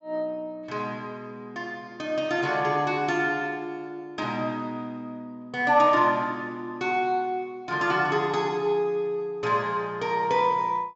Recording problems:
low-pass filter; nothing above 7.4 kHz

